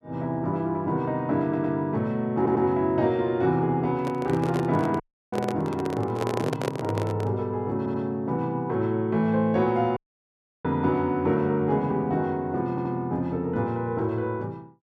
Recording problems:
stutter; 4 times, first at 1.5 s
handling noise; from 4 to 7.5 s; peak +2 dB vs average level
dropout; at 5 s and at 10 s for 0.5 s

